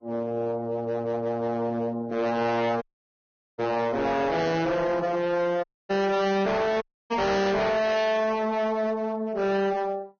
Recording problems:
codec artefacts; Vorbis, log-spectral distance 2 dB, nothing above 6.5 kHz
distorted audio; hard clipping, signal-to-distortion ratio 6 dB
audio cutting out; at 3 s for 1 s, at 5.5 s and at 7 s

